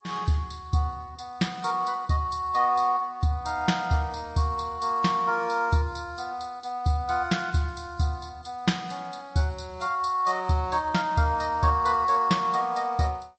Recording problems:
lossy codec; G.722, then MP3, log-spectral distance 3 dB, nothing above 8.2 kHz

